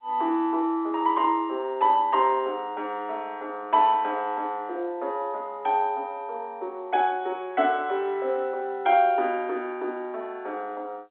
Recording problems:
phone line; 260 Hz to 3.6 kHz, G.711

